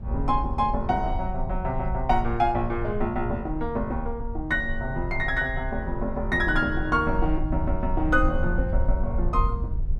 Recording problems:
rumble; below 62 Hz, SNR 5 dB

